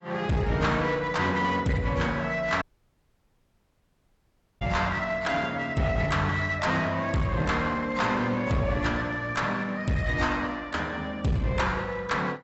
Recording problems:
lossy codec; AAC, log-spectral distance 3 dB, nothing above 7.8 kHz
distortion; hard clipping, uneven, signal-to-distortion ratio 9 dB
dropout; at 2.5 s for 2 s

